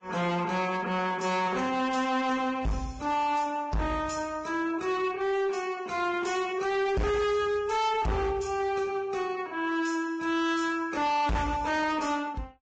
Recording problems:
treble cut off; nothing above 7.3 kHz
lossy codec; Vorbis, log-spectral distance 3 dB
distortion; hard clipping, signal-to-distortion ratio 8 dB

